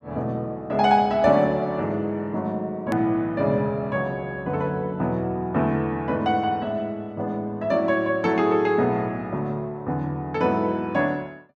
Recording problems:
edit click; at 3 s

